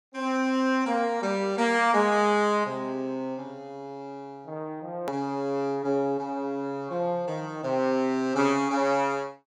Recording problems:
edit click; at 5 s

